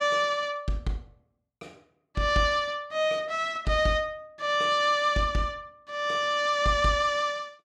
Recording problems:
none

